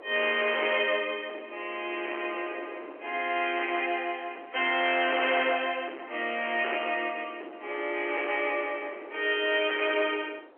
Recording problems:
telephone audio; 280 Hz to 3.2 kHz, G.711
distorted audio; hard clipping, uneven, signal-to-distortion ratio 12 dB
wind on the microphone; below 880 Hz, SNR 20 dB

